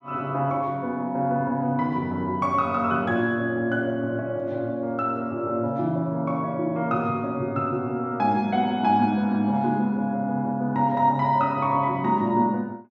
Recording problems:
none

